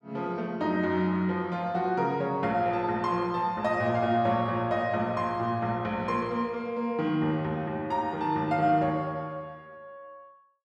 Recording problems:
none

